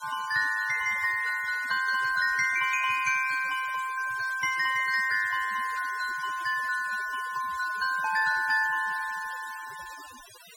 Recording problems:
denoising artefacts; signal-to-artefact ratio 18 dB

